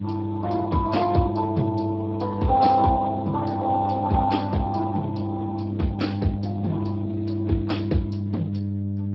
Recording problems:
codec artefacts; MP2, then Speex, log-spectral distance 4 dB
hum; 50 Hz, harmonics up to 600 Hz, SNR 4 dB

